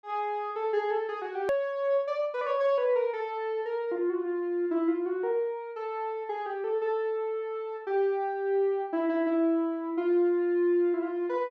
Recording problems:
hard cut with a click; at 1.5 s

